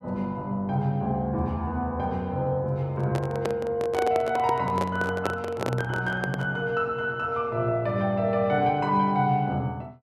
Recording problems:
microphone handling noise; from 3 to 6.5 s; peak +2 dB vs average level

